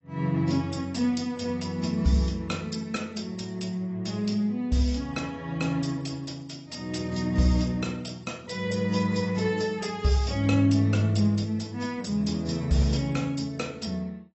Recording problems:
lossy compression; AAC, log-spectral distance 4 dB, nothing above 7.8 kHz

